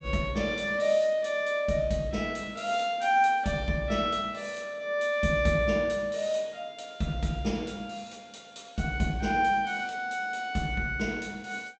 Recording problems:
low-pass filter; nothing above 8 kHz

